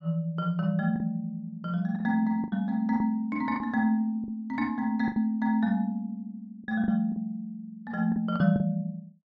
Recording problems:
packet loss; 7% of the sound replaced, filled with the last packet

